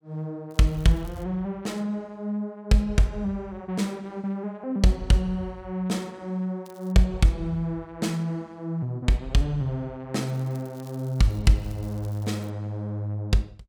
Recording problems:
crackle; at 0.5 s, at 6.5 s and from 10 to 13 s; loose cable, SNR 27 dB

